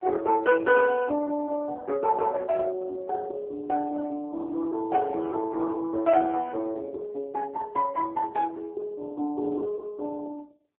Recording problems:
phone line; 260 Hz to 2.5 kHz, AMR-NB

